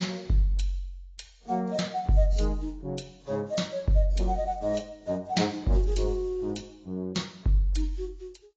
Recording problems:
lossy compression; AAC, then AAC, log-spectral distance 3 dB, nothing above 7.3 kHz

